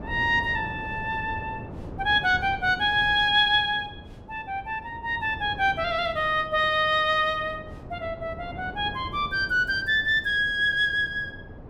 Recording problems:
wind noise; below 420 Hz, SNR 16 dB

